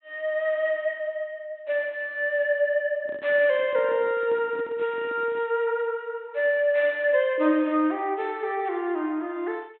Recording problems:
treble cut off; nothing above 3.8 kHz
microphone handling noise; from 3 to 5.5 s; peak -12 dB vs average level

